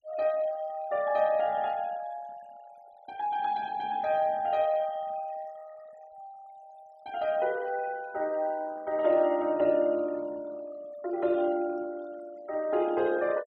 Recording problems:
denoising artefacts; signal-to-artefact ratio 23 dB

